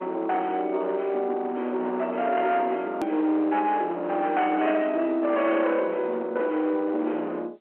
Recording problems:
phone line; 260 Hz to 3.4 kHz, G.711
distortion; hard clipping, uneven, signal-to-distortion ratio 11 dB
edit click; at 3 s

